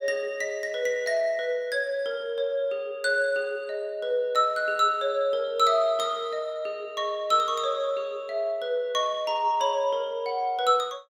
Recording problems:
none

